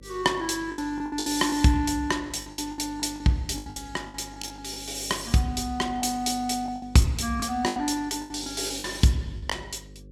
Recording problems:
hum; 50 Hz, harmonics up to 550 Hz, SNR 21 dB
lost packets; 12% of the sound replaced, filled with the last packet

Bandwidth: 16 kHz